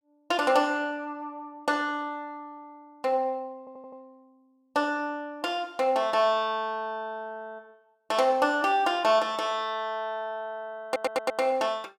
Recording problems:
audio stuttering; at 3.5 s and at 11 s

